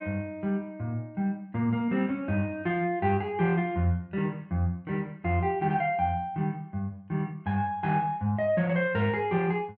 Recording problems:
treble cut off; nothing above 5.5 kHz

